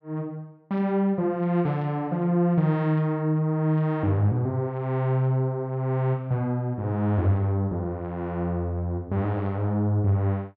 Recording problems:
none

